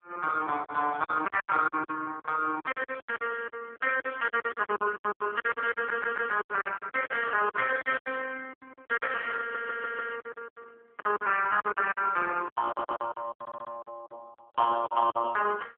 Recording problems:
phone line; 280 Hz to 2.8 kHz, AMR-NB
packet loss; 19% of the sound replaced, filled with silence
stutter; 4 times, first at 6 s

